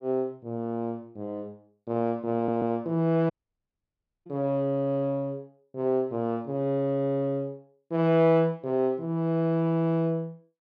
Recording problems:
audio stuttering; at 2.5 s
audio cutting out; at 3.5 s for 1 s

